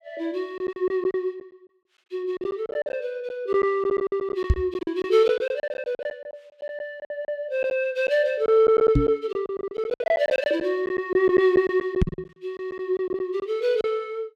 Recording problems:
packet loss; 13% of the sound replaced, filled with silence
microphone thump; at 4.5 s, at 9 s and at 12 s; peak +8 dB vs average level

